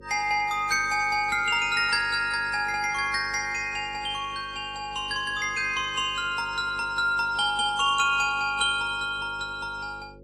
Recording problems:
codec artefacts; AAC, log-spectral distance 2 dB, nothing above 11 kHz
hum; 50 Hz, harmonics up to 550 Hz, SNR 23 dB

